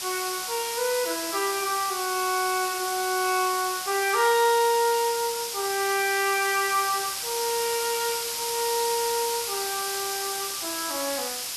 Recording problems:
hiss; slope +3 dB per octave, SNR 3 dB

